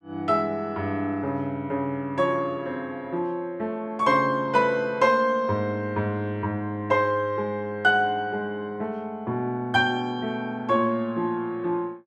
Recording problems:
none

